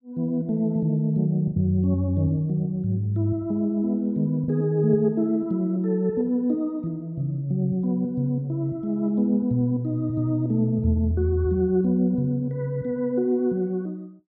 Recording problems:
packet loss; 0.9% of the sound replaced, filled with the last packet

